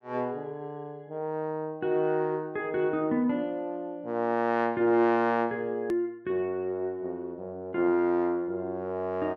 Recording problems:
edit click; at 6 s

